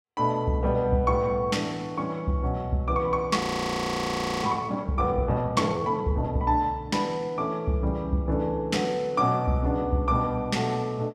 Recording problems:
frozen audio; at 3.5 s for 1 s

